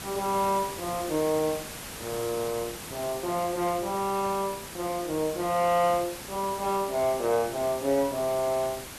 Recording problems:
hiss; slope -2 dB per octave, SNR 10 dB

